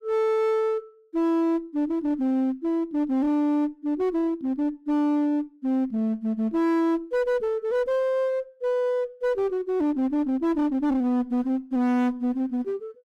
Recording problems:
distorted audio; hard clipping, uneven, signal-to-distortion ratio 9 dB

